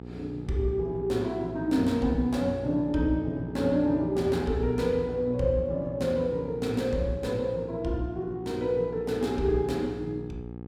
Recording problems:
hum; 60 Hz, harmonics up to 900 Hz, SNR 12 dB

